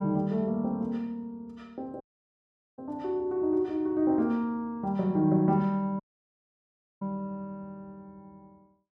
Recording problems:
dropout; at 2 s for 1 s and at 6 s for 1 s

